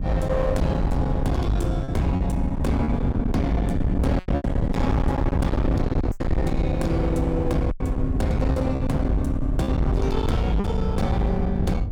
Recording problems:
distortion; hard clipping, signal-to-distortion ratio 7 dB
wind noise; below 160 Hz, SNR 2 dB
lost packets; 5% of the sound replaced, filled with repeated pitch periods

